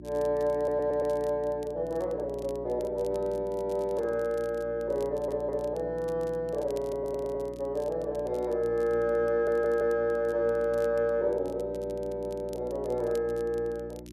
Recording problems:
mains hum; 60 Hz, harmonics up to 360 Hz, SNR 15 dB
crackle; vinyl, SNR 27 dB
audio stuttering; 4 times, first at 0.5 s

